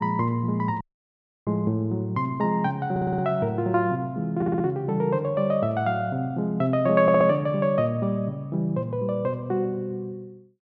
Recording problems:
audio cutting out; at 1 s for 0.5 s
audio stuttering; at 3 s, at 4.5 s and at 7 s

